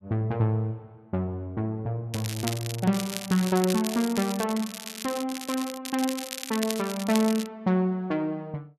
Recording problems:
crackle; from 2 to 7.5 s; loose cable, SNR 8 dB

